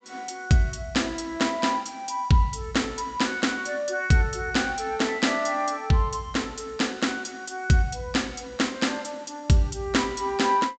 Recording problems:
treble cut off; nothing above 8 kHz

